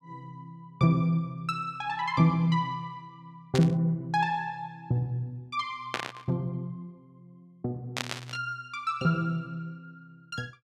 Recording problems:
burst of static; at 3.5 s, at 6 s and at 8 s; peak +3 dB vs average level

